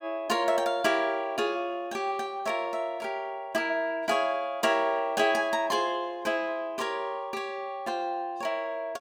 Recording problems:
none

